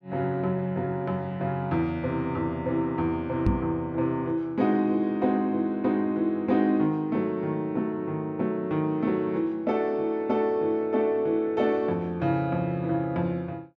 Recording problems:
microphone thump; at 3.5 s; peak +6 dB vs average level

